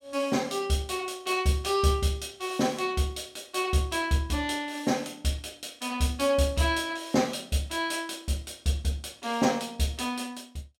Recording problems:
none

